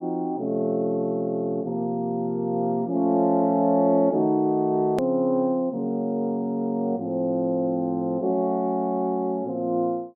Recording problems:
click at an edit; at 5 s

